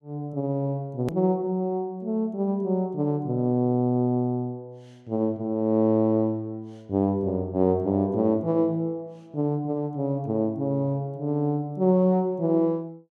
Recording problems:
hard cut with a click; at 1 s

